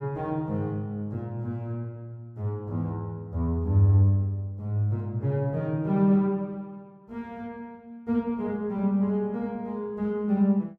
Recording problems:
none

